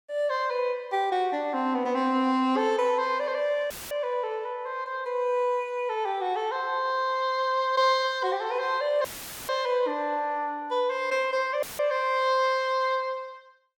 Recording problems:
dropout; at 3.5 s, at 9 s and at 12 s; filled with static

